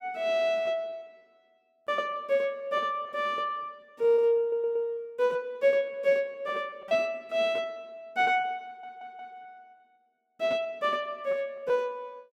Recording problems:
packet loss; 8% of the sound replaced, filled with repeated pitch periods
stutter; at 4.5 s and at 8.5 s

